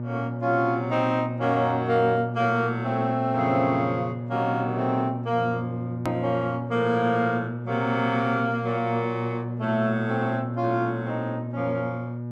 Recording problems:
mains hum; 60 Hz, harmonics up to 840 Hz, SNR 6 dB
click at an edit; at 6 s

